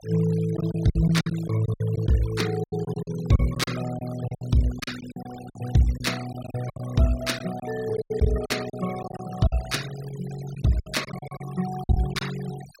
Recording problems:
noise reduction artefacts; signal-to-artefact ratio 16 dB
packet loss; 12% of the sound replaced, filled with silence

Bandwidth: 16 kHz